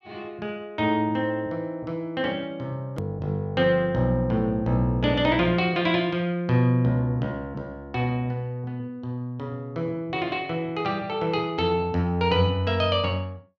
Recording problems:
hard cut with a click; at 3 s

